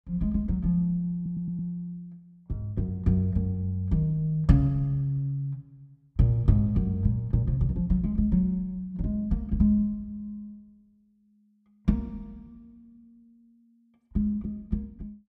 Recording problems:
audio stuttering; at 1 s

